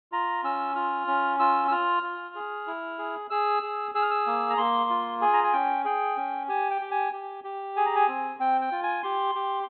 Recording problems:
treble cut off; nothing above 4 kHz

